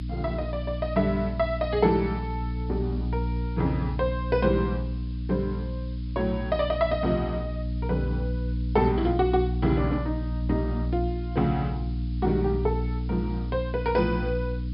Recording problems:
treble missing; nothing above 5.5 kHz
hum; 60 Hz, harmonics up to 300 Hz, SNR 3 dB
background hiss; SNR 27 dB

